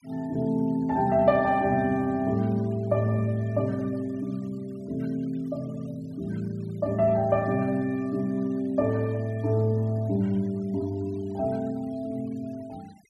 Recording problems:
noise reduction artefacts; signal-to-artefact ratio 28 dB

